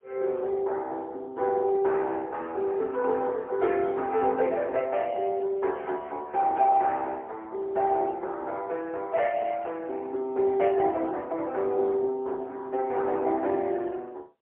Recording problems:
telephone audio; 300 Hz to 3.2 kHz, AMR-NB, then MP3

